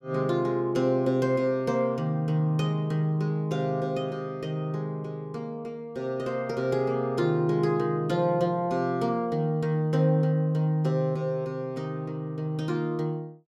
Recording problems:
none

